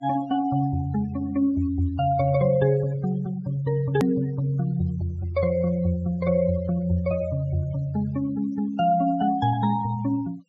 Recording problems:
low-pass filter; nothing above 8 kHz
denoising artefacts; signal-to-artefact ratio 24 dB
hard cut with a click; at 4 s

